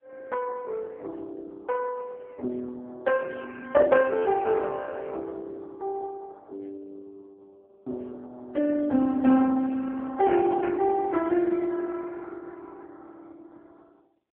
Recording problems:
telephone audio; 220 Hz to 2.6 kHz, AMR-NB

